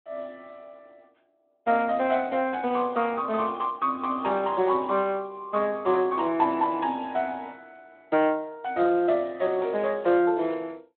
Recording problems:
phone line; 220 Hz to 3.7 kHz, Speex

